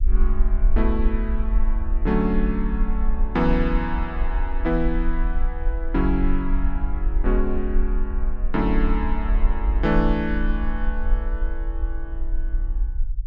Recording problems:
rumble; below 46 Hz, strongest tone 22 Hz, SNR 0 dB

